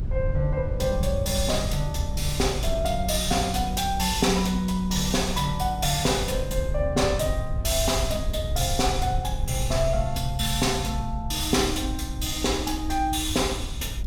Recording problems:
low-frequency rumble; below 88 Hz, SNR 6 dB

